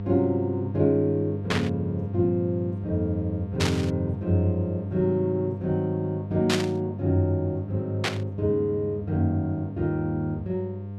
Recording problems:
hum; 50 Hz, harmonics up to 700 Hz, SNR 7 dB
burst of static; 4 times, first at 1.5 s; peak +4 dB vs average level

